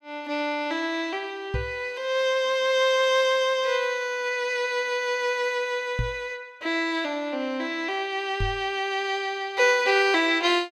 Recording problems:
microphone thump; at 1.5 s, at 6 s and at 8.5 s; peak 0 dB vs average level

